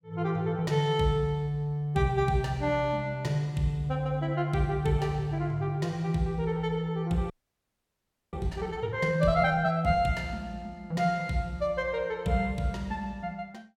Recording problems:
frozen audio; at 7.5 s for 1 s

